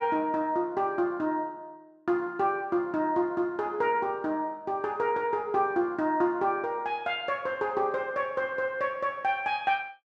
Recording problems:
none

